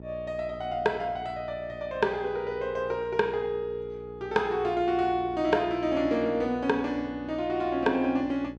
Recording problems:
hum; 60 Hz, harmonics up to 900 Hz, SNR 17 dB

